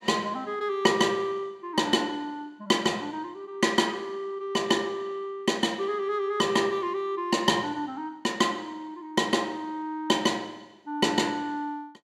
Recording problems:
none

